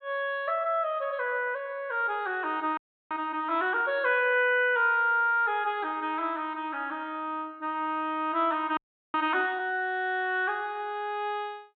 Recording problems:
low-pass filter; nothing above 4 kHz
frozen audio; at 3 s and at 9 s

